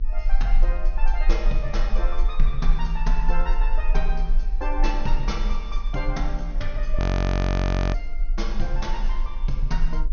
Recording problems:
treble missing; nothing above 6.5 kHz
hum; 50 Hz, harmonics up to 450 Hz, SNR 16 dB
rumble; below 38 Hz, strongest tone 20 Hz, SNR -6 dB
frozen audio; at 7 s for 1 s

